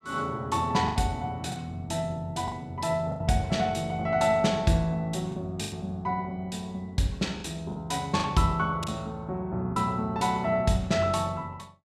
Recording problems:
packet loss; 5% of the sound replaced, filled with the last packet

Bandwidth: 15 kHz